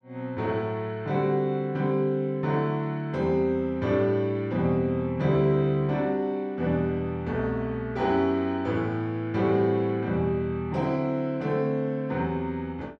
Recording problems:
none

